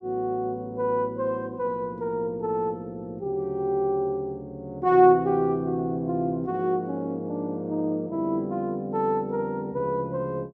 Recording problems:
none

